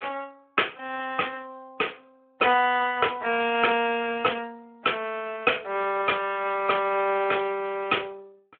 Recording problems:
telephone audio; 340 Hz to 3.3 kHz, Speex

